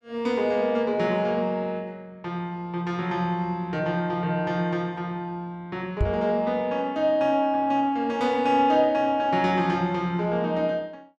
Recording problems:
microphone bump; at 6 s; peak +4 dB vs average level

